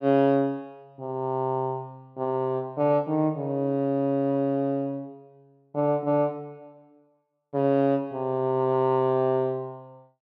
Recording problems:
none

